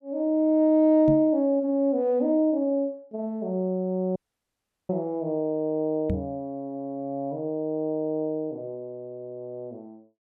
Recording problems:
microphone bump; at 1 s and at 6 s; peak +1 dB vs average level
audio cutting out; at 4 s for 0.5 s

